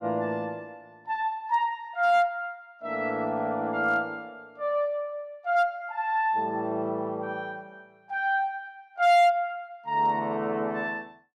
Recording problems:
distortion; hard clipping, signal-to-distortion ratio 10 dB

